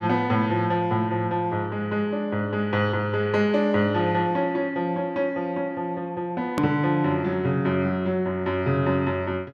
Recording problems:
hard cut with a click; at 6.5 s

